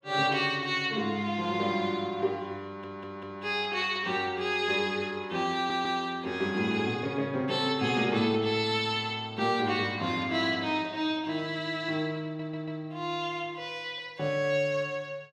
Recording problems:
stutter; at 2.5 s, at 5.5 s and at 12 s

